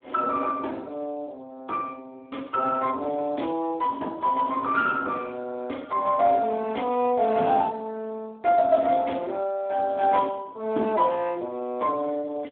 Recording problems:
telephone audio; 220 Hz to 2.1 kHz, Speex

